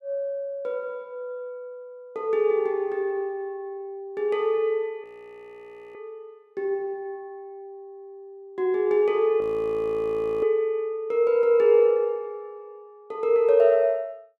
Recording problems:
frozen audio; at 5 s for 1 s and at 9.5 s for 1 s

